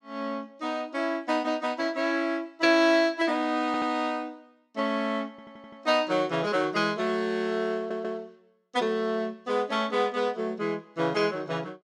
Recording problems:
stutter; at 3.5 s, at 5.5 s and at 8 s

